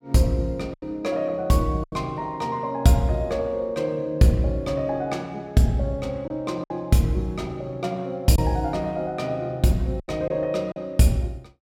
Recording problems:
packet loss; 4% of the sound replaced, filled with silence

